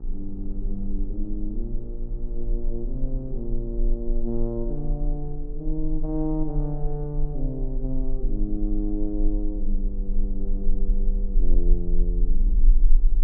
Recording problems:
hum; 60 Hz, harmonics up to 960 Hz, SNR 16 dB
low-frequency rumble; below 32 Hz, strongest tone 18 Hz, SNR -3 dB

